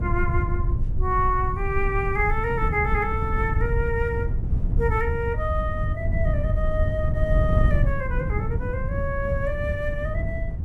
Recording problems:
low-frequency rumble; below 80 Hz, SNR 4 dB
wind noise; below 130 Hz, SNR 1 dB

